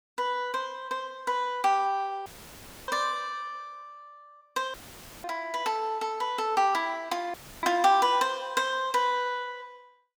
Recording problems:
dropout; at 2.5 s for 0.5 s, at 4.5 s for 0.5 s and at 7.5 s; filled with static

